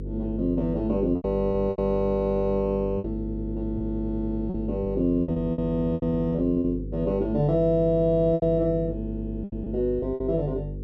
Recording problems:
electrical hum; 50 Hz, harmonics up to 500 Hz, SNR 9 dB
lost packets; 9% of the sound replaced, filled with repeated pitch periods

